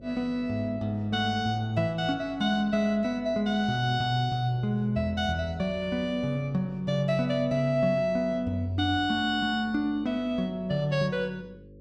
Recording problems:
hum; 50 Hz, harmonics up to 550 Hz, SNR 22 dB

